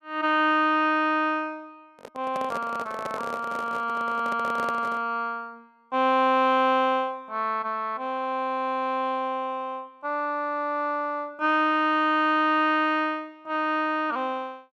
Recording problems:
handling noise; from 2 to 5 s; peak -5 dB vs average level

